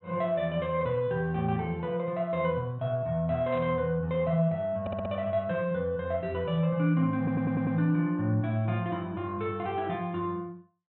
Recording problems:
treble missing; nothing above 3.9 kHz
static burst; at 3.5 s; peak -14 dB vs average level
stutter; at 5 s and at 7 s

